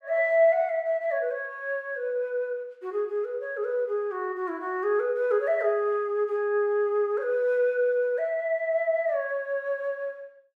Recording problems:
none

